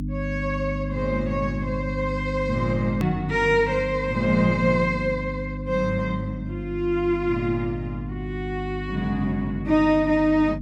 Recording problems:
hum; 50 Hz, harmonics up to 300 Hz, SNR 7 dB
click at an edit; at 3 s

